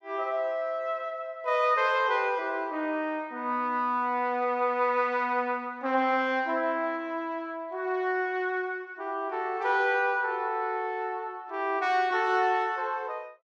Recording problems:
none

